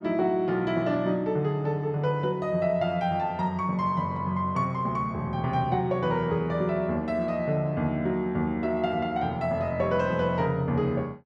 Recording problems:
none

